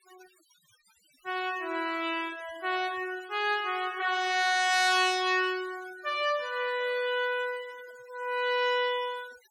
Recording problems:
denoising artefacts; signal-to-artefact ratio 20 dB

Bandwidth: 17.5 kHz